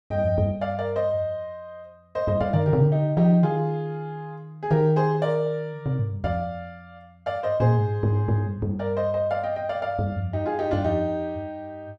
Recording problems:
none

